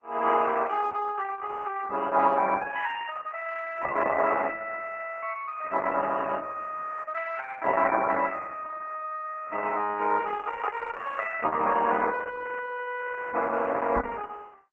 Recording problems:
lossy compression; MP3, then Opus, log-spectral distance 5 dB
microphone thump; at 14 s; peak -3 dB vs average level

